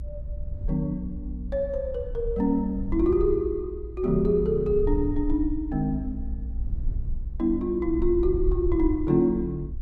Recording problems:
low-frequency rumble; below 60 Hz, SNR 8 dB

